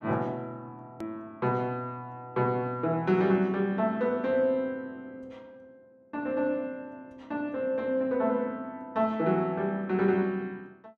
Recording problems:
click at an edit; at 1 s

